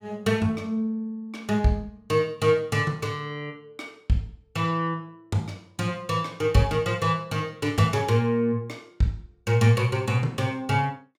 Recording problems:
none

